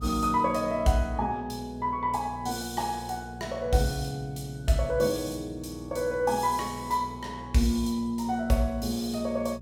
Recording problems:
hum; 60 Hz, harmonics up to 420 Hz, SNR 16 dB

